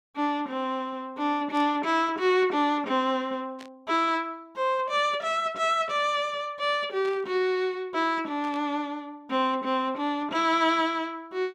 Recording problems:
burst of static; 4 times, first at 1.5 s; peak -14 dB vs average level

